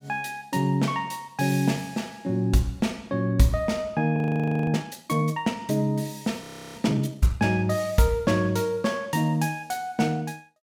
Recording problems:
frozen audio; at 4 s for 0.5 s and at 6.5 s

